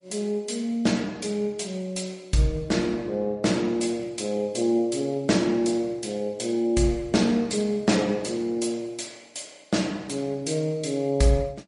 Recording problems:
lossy compression; MP3, log-spectral distance 4 dB, nothing above 10.4 kHz

